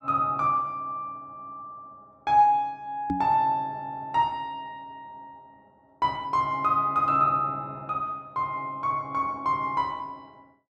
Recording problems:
knock on the microphone; at 3 s; peak +1 dB vs average level

